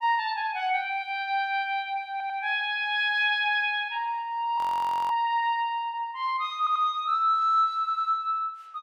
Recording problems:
audio stuttering; at 2 s, at 6.5 s and at 8 s
audio freezing; at 4.5 s for 0.5 s

